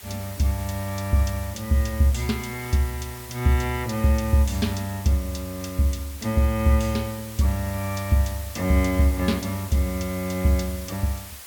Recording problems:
hiss; slope 0 dB per octave, SNR 15 dB

